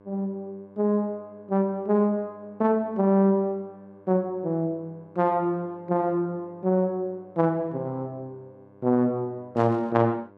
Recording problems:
hum; 50 Hz, harmonics up to 1.7 kHz, SNR 27 dB
burst of static; at 9.5 s; peak -16 dB vs average level

